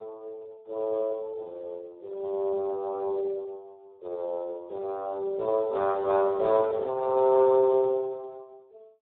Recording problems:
phone line; 340 Hz to 2.1 kHz, Speex

